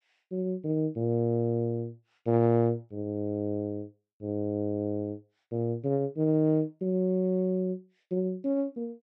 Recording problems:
none

